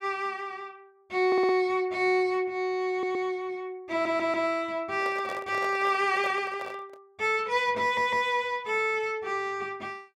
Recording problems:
audio stuttering; 4 times, first at 1.5 s
microphone handling noise; from 5 to 7 s; peak -7 dB vs average level

